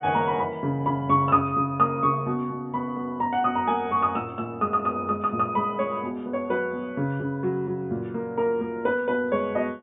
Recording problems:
treble missing; nothing above 3.7 kHz

